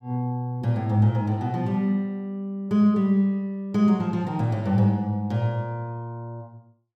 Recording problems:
none

